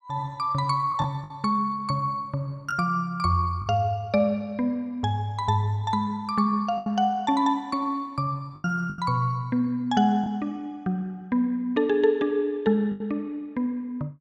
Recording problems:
packet loss; 4% of the sound replaced, filled with the last packet

